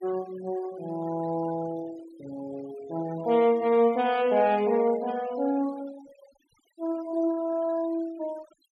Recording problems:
noise reduction artefacts; signal-to-artefact ratio 21 dB

